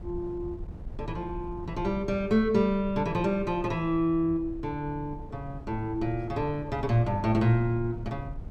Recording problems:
wind noise; below 110 Hz, SNR 14 dB

